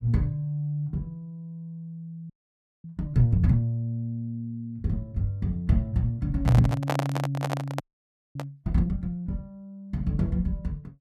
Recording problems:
audio freezing; at 2.5 s for 0.5 s and at 8 s for 0.5 s
handling noise; from 6.5 to 8.5 s; peak +4 dB vs average level

